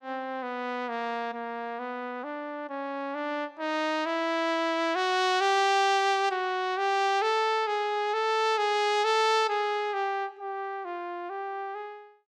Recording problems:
none

